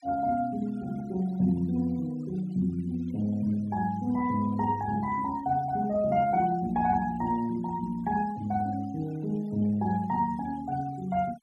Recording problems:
noise reduction artefacts; signal-to-artefact ratio 23 dB

